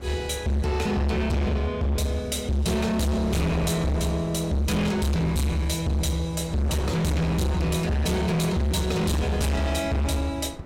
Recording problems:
distortion; hard clipping, signal-to-distortion ratio 6 dB
wind noise; below 770 Hz, SNR 16 dB

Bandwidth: 16 kHz